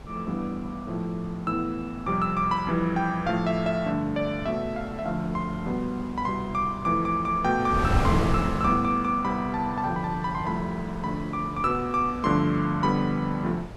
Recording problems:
wind noise; below 410 Hz, SNR 10 dB

